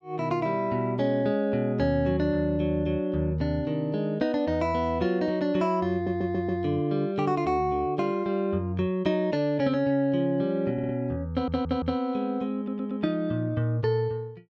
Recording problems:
stutter; 4 times, first at 6 s

